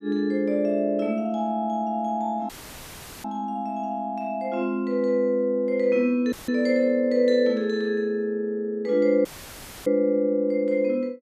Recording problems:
audio cutting out; at 2.5 s for 1 s, at 6.5 s and at 9.5 s for 0.5 s; filled with static

